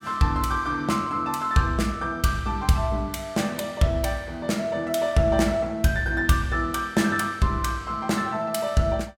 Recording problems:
none

